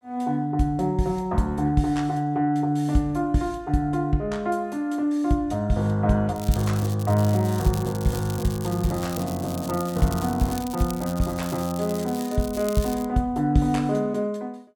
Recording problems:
crackle; from 6.5 to 13 s; loose cable, SNR 15 dB

